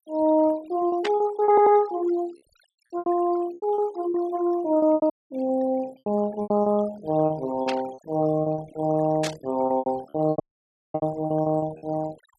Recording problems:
noise reduction artefacts; signal-to-artefact ratio 21 dB
lost packets; 13% of the sound replaced, filled with repeated pitch periods
static burst; at 1 s, at 7.5 s and at 9 s; peak -2 dB vs average level
audio stuttering; at 1.5 s
dropout; at 5 s and at 10 s for 0.5 s

